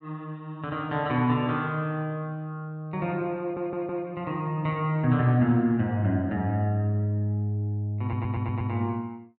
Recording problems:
audio stuttering; at 3.5 s and at 8 s

